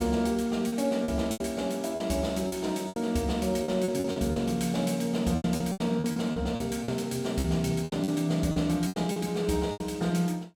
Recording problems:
packet loss; 13% of the sound replaced, filled with repeated pitch periods

